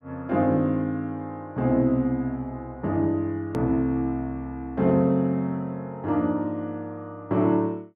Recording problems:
hard cut with a click; at 3.5 s

